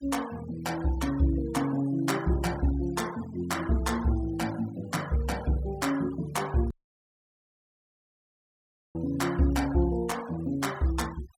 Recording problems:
denoising artefacts; signal-to-artefact ratio 17 dB
dropout; at 6.5 s for 2 s

